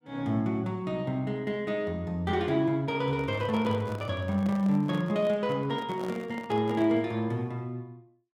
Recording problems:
handling noise; from 3 to 7 s; peak -7 dB vs average level

